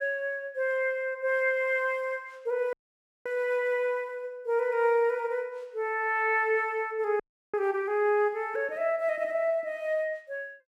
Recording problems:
frozen audio; at 2.5 s for 0.5 s and at 7 s

